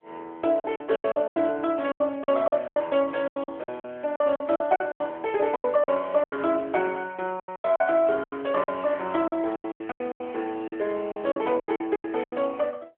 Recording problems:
phone line; 280 Hz to 3.3 kHz, AMR-NB
lost packets; 17% of the sound replaced, filled with silence

